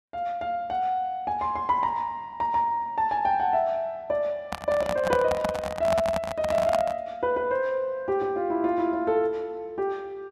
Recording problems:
microphone handling noise; from 4.5 to 7 s; peak +3 dB vs average level

